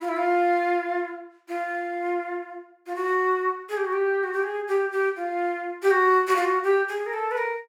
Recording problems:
none

